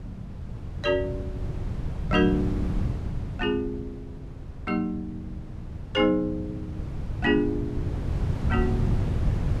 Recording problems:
wind on the microphone; below 150 Hz, SNR 4 dB

